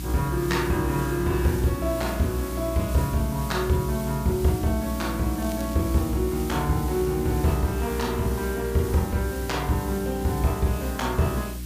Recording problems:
electrical hum; 60 Hz, harmonics up to 360 Hz, SNR 8 dB
background hiss; slope +2 dB per octave, SNR 14 dB
crackling; at 5.5 s; loose cable, SNR 21 dB

